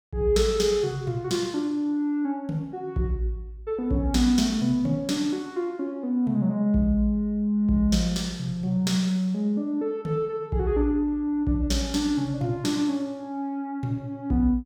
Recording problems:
none

